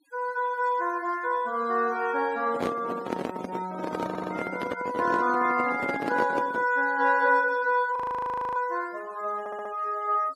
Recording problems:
denoising artefacts; signal-to-artefact ratio 21 dB
microphone handling noise; from 2.5 to 6.5 s; peak +2 dB vs average level
audio stuttering; at 4 s and at 9.5 s
frozen audio; at 8 s for 0.5 s

